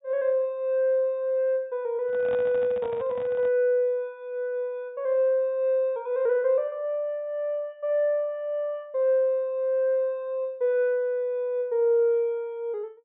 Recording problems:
low-pass filter; nothing above 4 kHz
handling noise; from 2 to 3.5 s; peak -9 dB vs average level

